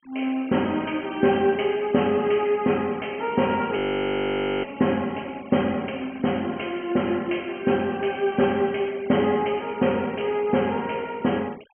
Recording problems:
treble cut off; nothing above 3.2 kHz
noise reduction artefacts; signal-to-artefact ratio 24 dB
frozen audio; at 4 s for 1 s

